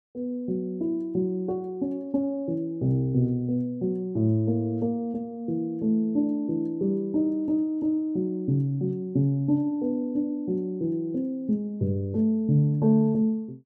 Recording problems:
none

